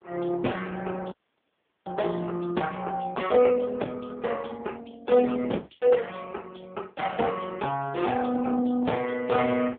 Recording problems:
telephone audio; 150 Hz to 3.5 kHz, AMR-NB
audio freezing; at 1 s for 0.5 s

